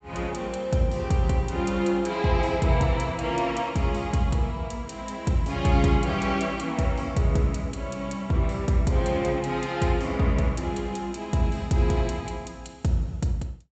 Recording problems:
low-pass filter; nothing above 8 kHz

